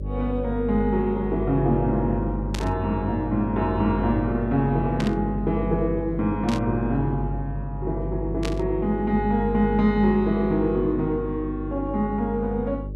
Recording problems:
mains hum; 50 Hz, harmonics up to 550 Hz, SNR 7 dB
burst of static; 4 times, first at 2.5 s; peak -4 dB vs average level

